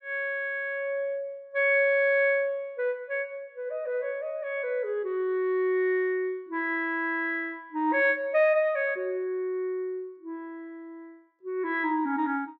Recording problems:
none

